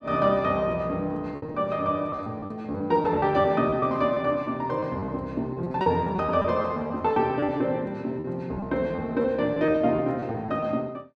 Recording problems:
lost packets; 10% of the sound replaced, filled with repeated pitch periods

